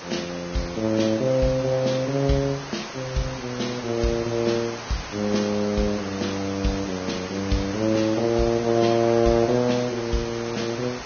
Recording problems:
codec artefacts; Vorbis, log-spectral distance 13 dB, nothing above 6.3 kHz
hiss; slope -3 dB per octave, SNR 11 dB

